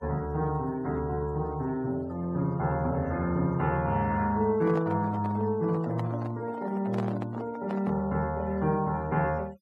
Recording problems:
denoising artefacts; signal-to-artefact ratio 24 dB
microphone handling noise; from 4.5 to 8 s; peak -3 dB vs average level

